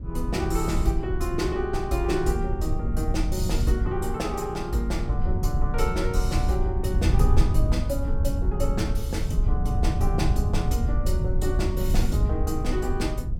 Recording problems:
low-frequency rumble; below 90 Hz, SNR -2 dB

